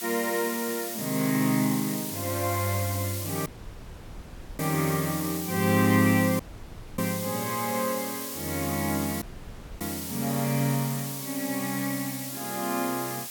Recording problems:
hiss; slope +2 dB per octave, SNR 6 dB
audio cutting out; at 3.5 s for 1 s, at 6.5 s for 0.5 s and at 9 s for 0.5 s
burst of static; at 7.5 s; peak -14 dB vs average level

